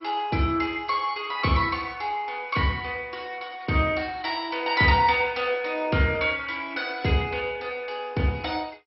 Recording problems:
lossy codec; MP2, log-spectral distance 4 dB, nothing above 4.8 kHz

